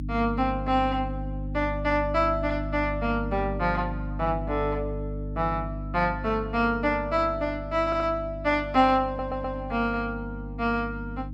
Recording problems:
mains hum; 50 Hz, harmonics up to 300 Hz, SNR 8 dB
stutter; at 8 s and at 9 s

